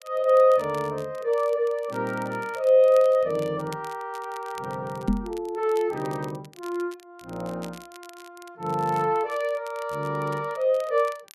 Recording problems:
crackle; vinyl, SNR 24 dB
microphone bump; at 5 s; peak +4 dB vs average level

